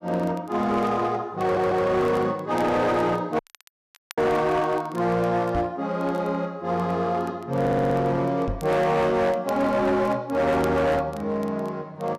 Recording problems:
distorted audio; hard clipping, signal-to-distortion ratio 11 dB
crackling; vinyl, SNR 28 dB
audio stuttering; at 1.5 s and at 7.5 s
audio cutting out; at 3.5 s for 1 s
microphone bump; at 5.5 s and at 8.5 s; peak -3 dB vs average level

